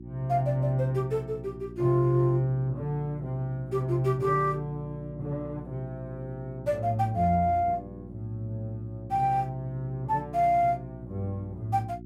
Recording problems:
electrical hum; 60 Hz, harmonics up to 360 Hz, SNR 14 dB

